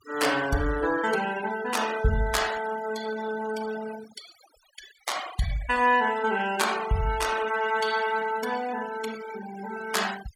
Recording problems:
denoising artefacts; signal-to-artefact ratio 14 dB

